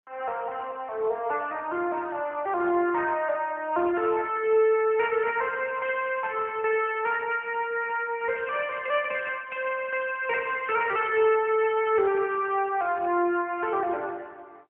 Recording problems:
phone line; 300 Hz to 3.1 kHz, AMR-NB, then MP3

